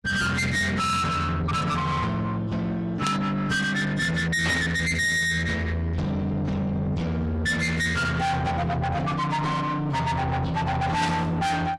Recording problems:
codec artefacts; AAC, log-spectral distance 2 dB, nothing above 11.3 kHz
distortion; soft clipping, signal-to-distortion ratio 6 dB
burst of static; at 3 s, at 4.5 s and at 11 s; peak -1 dB vs average level

